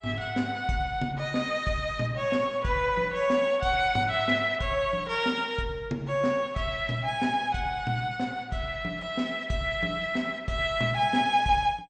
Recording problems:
lossy codec; MP2, log-spectral distance 2 dB, nothing above 8.2 kHz

